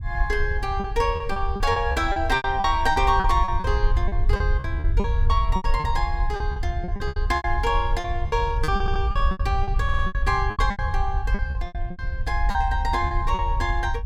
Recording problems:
low-frequency rumble; below 68 Hz, SNR 2 dB
lost packets; 15% of the sound replaced, filled with repeated pitch periods
audio stuttering; at 9 s and at 10 s

